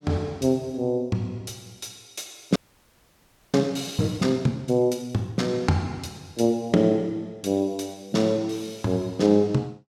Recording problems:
frozen audio; at 2.5 s for 1 s

